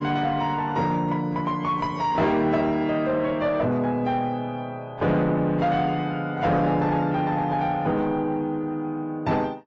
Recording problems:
lossy compression; AAC, log-spectral distance 2 dB, nothing above 6.5 kHz
distorted audio; soft clipping, signal-to-distortion ratio 11 dB

